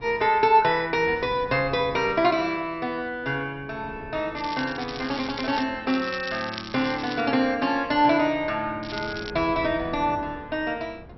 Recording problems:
treble missing; nothing above 5.6 kHz
wind on the microphone; below 440 Hz, SNR 20 dB
crackle; from 4.5 to 5.5 s, from 6 to 7 s and at 9 s; loose cable, SNR 14 dB

